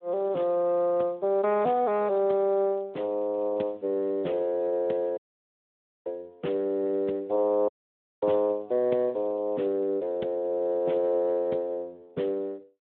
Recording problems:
telephone audio; 170 Hz to 3.5 kHz, Speex
audio cutting out; at 5 s for 1 s and at 7.5 s for 0.5 s

